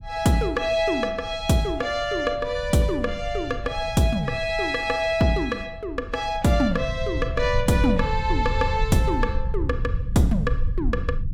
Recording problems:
rumble; below 82 Hz, SNR 7 dB

